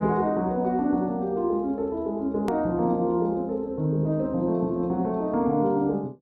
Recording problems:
edit click; at 2.5 s

